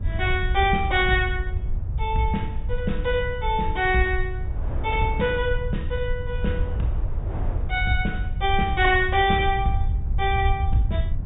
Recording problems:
low-pass filter; nothing above 4 kHz
rumble; below 82 Hz, SNR 4 dB
wind noise; below 570 Hz, SNR 19 dB

